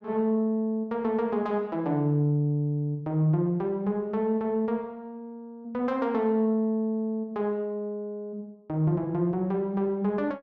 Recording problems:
none

